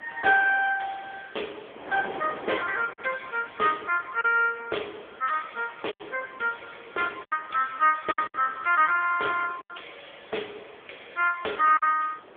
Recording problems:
telephone audio; 320 Hz to 2.9 kHz, AMR-NB
hiss; SNR 29 dB
wind noise; below 1.1 kHz, SNR 20 dB
lost packets; 4% of the sound replaced, filled with silence

